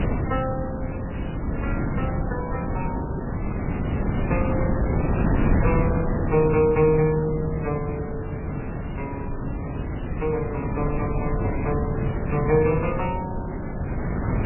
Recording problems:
lossy codec; MP3, log-spectral distance 4 dB, nothing above 2.7 kHz
wind on the microphone; below 300 Hz, SNR 1 dB

